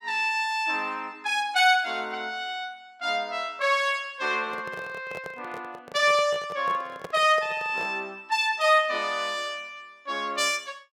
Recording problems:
handling noise; from 4.5 to 8 s; peak -8 dB vs average level

